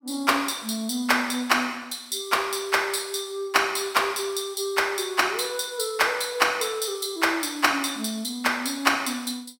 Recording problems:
none

